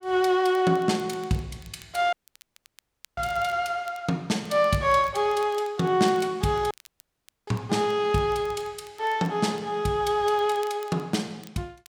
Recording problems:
crackle; vinyl, SNR 27 dB
audio cutting out; at 2 s for 1 s and at 6.5 s for 1 s

